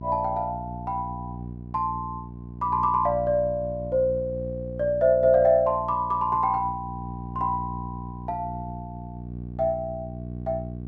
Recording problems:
electrical hum; 60 Hz, harmonics up to 480 Hz, SNR 11 dB

